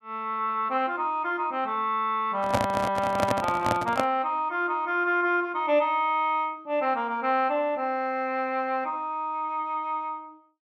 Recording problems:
microphone handling noise; from 2.5 to 4 s; peak +5 dB vs average level

